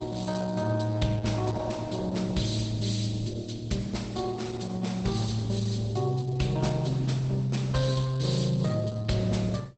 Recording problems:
lossy compression; Opus, log-spectral distance 4 dB, nothing above 8 kHz

